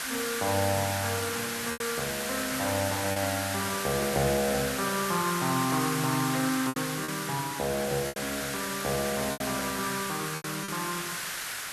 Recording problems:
hiss; SNR 2 dB
packet loss; 5% of the sound replaced, filled with repeated pitch periods

